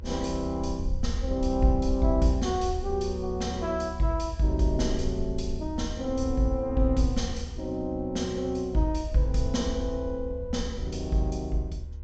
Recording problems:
treble missing; nothing above 8 kHz
hum; 60 Hz, harmonics up to 2.5 kHz, SNR 28 dB
low-frequency rumble; below 74 Hz, SNR 7 dB

